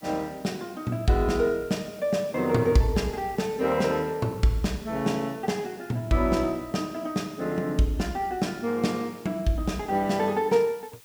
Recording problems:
background hiss; slope +1 dB per octave, SNR 25 dB

